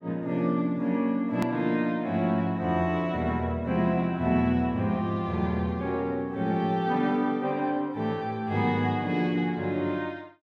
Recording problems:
click at an edit; at 1.5 s

